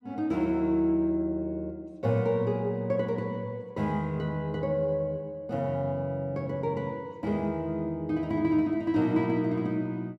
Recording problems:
none

